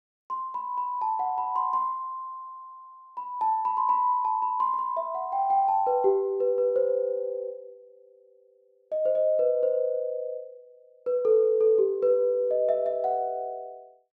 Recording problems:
none

